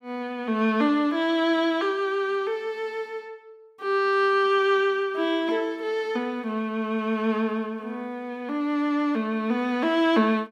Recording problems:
none

